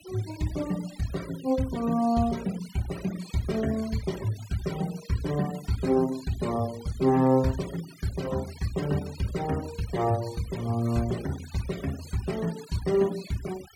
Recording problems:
denoising artefacts; signal-to-artefact ratio 17 dB

